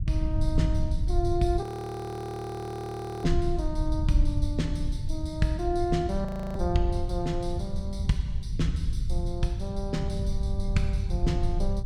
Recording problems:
rumble; below 88 Hz, SNR 0 dB
audio freezing; at 1.5 s for 1.5 s and at 6.5 s

